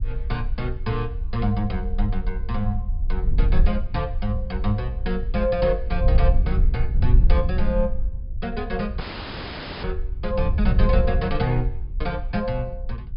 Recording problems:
treble cut off; nothing above 5.5 kHz
low-frequency rumble; below 54 Hz, SNR 4 dB
wind noise; below 70 Hz, SNR -2 dB
dropout; at 9 s for 1 s

